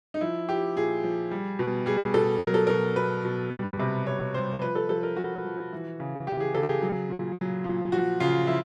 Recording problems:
lost packets; 10% of the sound replaced, filled with repeated pitch periods

